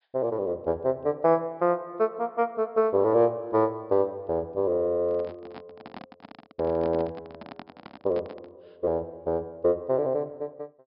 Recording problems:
low-pass filter; nothing above 5.5 kHz
microphone handling noise; from 5 to 8.5 s; peak -10 dB vs average level

